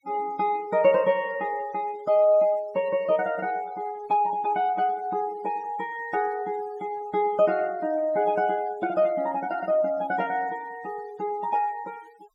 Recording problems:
denoising artefacts; signal-to-artefact ratio 24 dB

